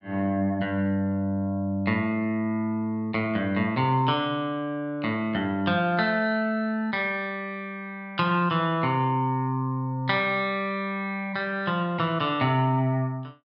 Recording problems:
none

